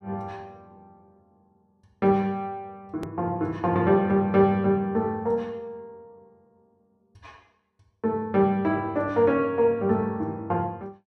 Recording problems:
hard cut with a click; at 3 s

